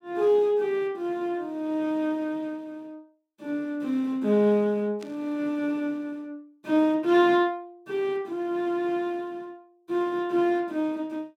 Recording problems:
burst of static; at 5 s; peak -16 dB vs average level

